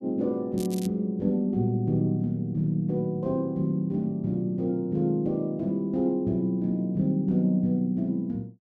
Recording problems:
crackle; at 0.5 s; loose cable, SNR 17 dB

